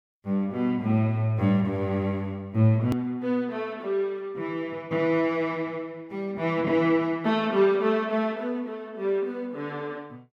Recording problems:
hard cut with a click; at 3 s

